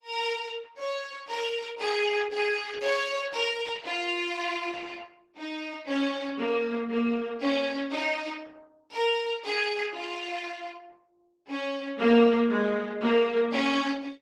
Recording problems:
lossy codec; Opus, log-spectral distance 5 dB, nothing above 18.3 kHz

